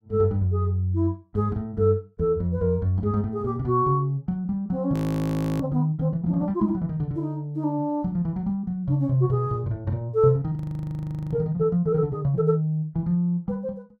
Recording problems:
audio freezing; at 5 s for 0.5 s and at 11 s for 1 s

